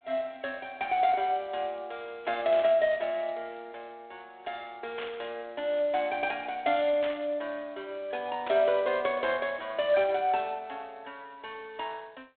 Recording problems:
telephone audio; 280 Hz to 3.9 kHz, G.726
burst of static; 4 times, first at 2.5 s; peak -6 dB vs average level

